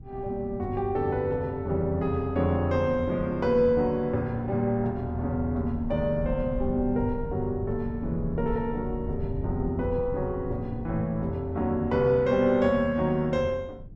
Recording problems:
low-frequency rumble; below 140 Hz, SNR 12 dB

